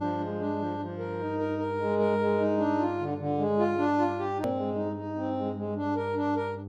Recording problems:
electrical hum; 50 Hz, harmonics up to 900 Hz, SNR 12 dB
click at an edit; at 4.5 s

